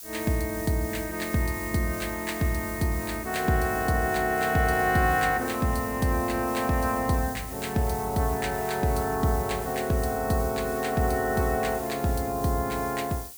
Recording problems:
background hiss; SNR 12 dB

